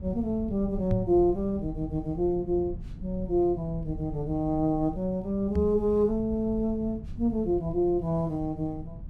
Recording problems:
low-frequency rumble; below 120 Hz, SNR 13 dB
microphone thump; at 1 s and at 5.5 s; peak +3 dB vs average level

